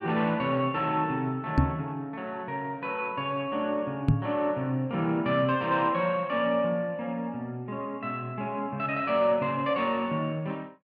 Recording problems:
microphone thump; at 1.5 s and at 4 s; peak +9 dB vs average level

